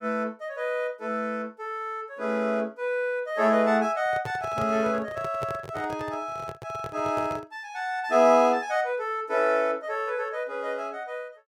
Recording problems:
microphone handling noise; from 4 to 7.5 s; peak -5 dB vs average level

